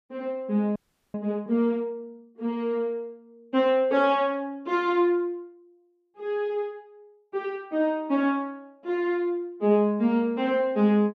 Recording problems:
frozen audio; at 1 s

